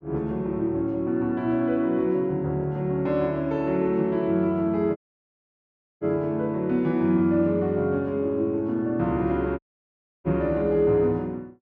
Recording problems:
audio cutting out; at 5 s for 1 s and at 9.5 s for 0.5 s

